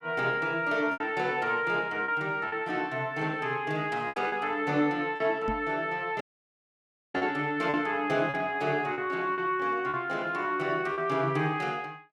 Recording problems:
lost packets; 5% of the sound replaced, filled with repeated pitch periods
microphone bump; at 5.5 s; peak -1 dB vs average level
audio cutting out; at 6 s for 1 s

